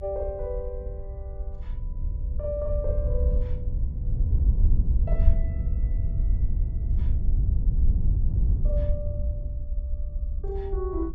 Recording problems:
rumble; below 66 Hz, SNR 1 dB
wind noise; below 74 Hz, SNR -8 dB

